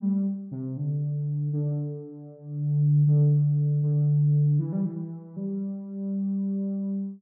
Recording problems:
none

